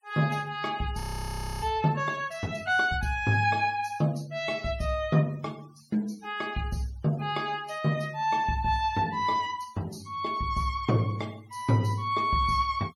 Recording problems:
noise reduction artefacts; signal-to-artefact ratio 25 dB
audio freezing; at 1 s for 0.5 s

